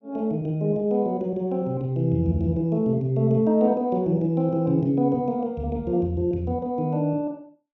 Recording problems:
none

